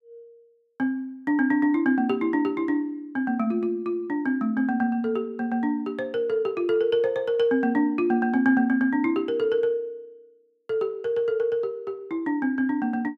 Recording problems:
none

